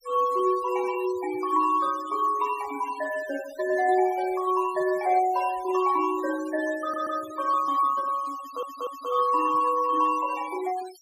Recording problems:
noise reduction artefacts; signal-to-artefact ratio 18 dB
stutter; at 7 s and at 8.5 s

